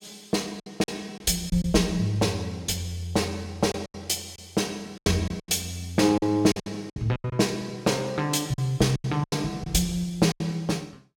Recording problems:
packet loss; 10% of the sound replaced, filled with silence

